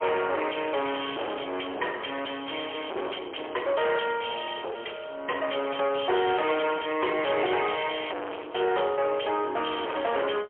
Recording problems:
telephone audio; 320 Hz to 3.3 kHz, AMR-NB, then MP3
distortion; hard clipping, signal-to-distortion ratio 4 dB

